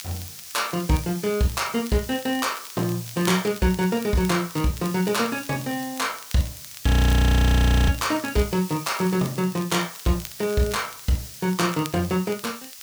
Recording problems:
background hiss; slope +4 dB per octave, SNR 14 dB
crackle; vinyl, SNR 20 dB
audio freezing; at 7 s for 1 s

